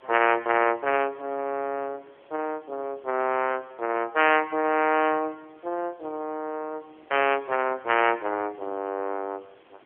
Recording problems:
telephone audio; 280 Hz to 3.1 kHz, AMR-NB
background hiss; SNR 30 dB

